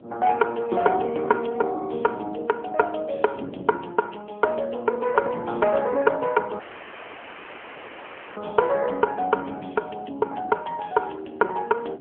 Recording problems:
telephone audio; 260 Hz to 2 kHz, AMR-NB
wind noise; below 450 Hz, SNR 18 dB
dropout; at 6.5 s for 2 s

